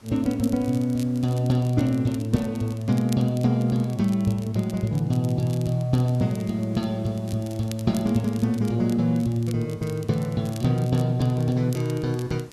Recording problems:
hiss; slope -5 dB per octave, SNR 27 dB
crackle; vinyl, SNR 22 dB

